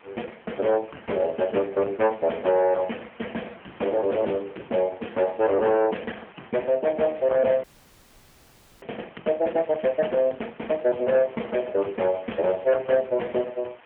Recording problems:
phone line; 260 Hz to 2.9 kHz, AMR-NB
distorted audio; hard clipping, signal-to-distortion ratio 11 dB
hiss; SNR 26 dB
audio freezing; at 7.5 s for 1 s
crackling; at 9.5 s; loose cable, SNR 25 dB

